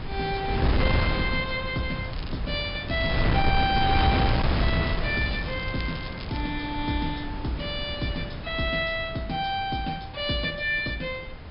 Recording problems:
treble cut off; nothing above 5.5 kHz
wind noise; below 370 Hz, SNR 1 dB
crackle; at 2 s, at 3 s and from 4 to 6.5 s; loose cable, SNR 15 dB

